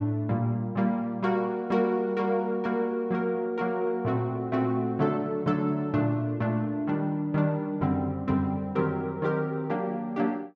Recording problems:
none

